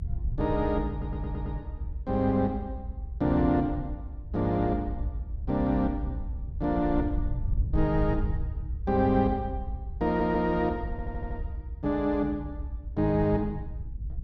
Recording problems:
rumble; below 76 Hz, SNR 7 dB
audio stuttering; at 1 s, at 10 s and at 11 s

